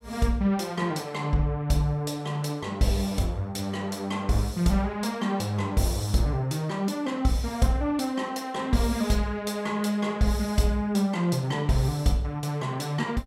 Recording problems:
none

